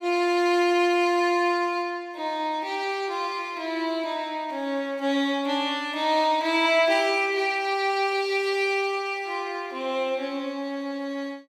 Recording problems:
none

